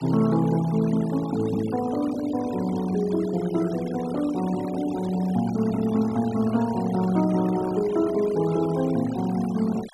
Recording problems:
denoising artefacts; signal-to-artefact ratio 17 dB

